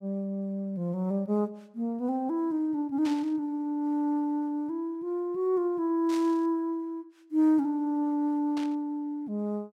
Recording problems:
burst of static; at 3 s, at 6 s and at 8.5 s; peak -9 dB vs average level

